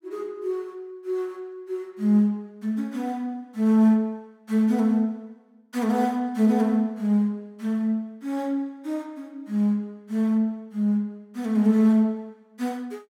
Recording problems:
none

